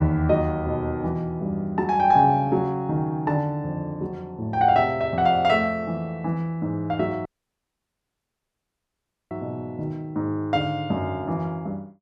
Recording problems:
dropout; at 7.5 s for 2 s

